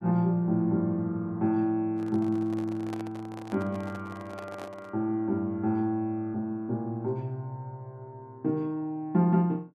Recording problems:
microphone handling noise; from 2 to 5 s; peak -7 dB vs average level

